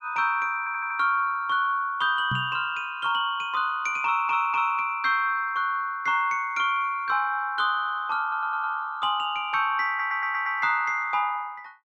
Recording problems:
stutter; 4 times, first at 0.5 s
microphone thump; at 2.5 s; peak -3 dB vs average level

